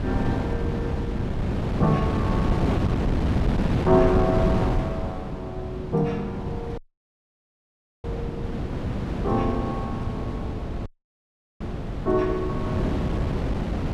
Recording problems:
hum; 50 Hz, harmonics up to 550 Hz, SNR 18 dB
wind noise; below 310 Hz, SNR -1 dB
dropout; at 7 s for 1.5 s and at 11 s for 0.5 s

